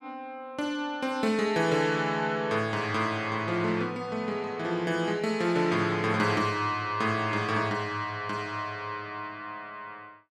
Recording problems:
none

